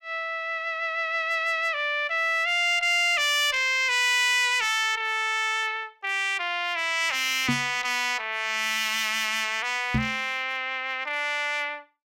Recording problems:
distortion; hard clipping, uneven, signal-to-distortion ratio 12 dB
knock on the microphone; at 7.5 s and at 10 s; peak +2 dB vs average level

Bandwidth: 16 kHz